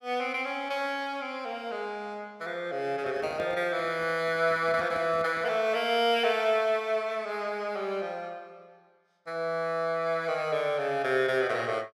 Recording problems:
microphone handling noise; from 3 to 5.5 s; peak -10 dB vs average level

